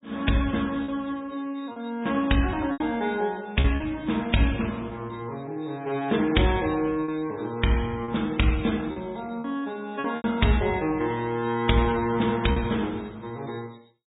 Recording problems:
treble cut off; nothing above 3.8 kHz
codec artefacts; MP3, log-spectral distance 5 dB
packet loss; 4% of the sound replaced, filled with repeated pitch periods

